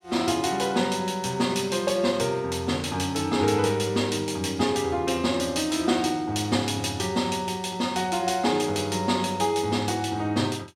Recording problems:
none

